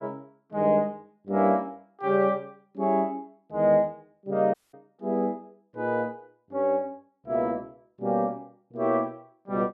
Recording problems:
dropout; at 4.5 s

